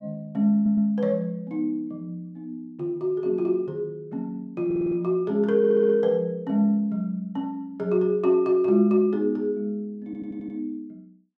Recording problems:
stutter; 4 times, first at 0.5 s

